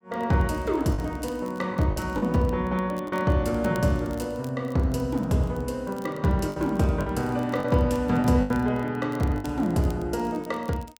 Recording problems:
crackling; vinyl, SNR 26 dB
packet loss; 5% of the sound replaced, filled with the last packet

